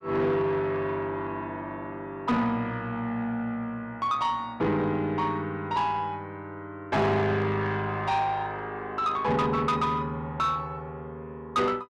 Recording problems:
distorted audio; soft clipping, signal-to-distortion ratio 10 dB

